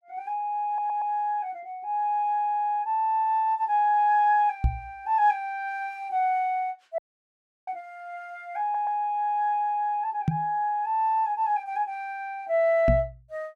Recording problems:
stutter; at 0.5 s, at 2.5 s and at 8.5 s
microphone bump; at 4.5 s, at 10 s and at 13 s; peak +6 dB vs average level
audio cutting out; at 7 s for 0.5 s

